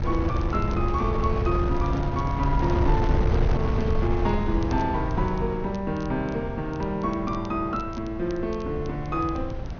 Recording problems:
treble cut off; nothing above 6.5 kHz
hum; 60 Hz, harmonics up to 720 Hz, SNR 21 dB
wind noise; below 130 Hz, SNR 1 dB
crackle; vinyl, SNR 26 dB

